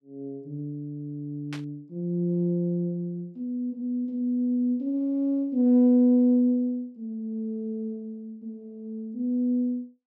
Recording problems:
static burst; at 1.5 s; peak -9 dB vs average level

